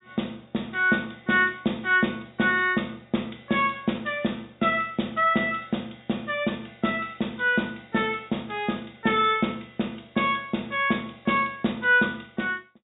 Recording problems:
treble missing; nothing above 4 kHz

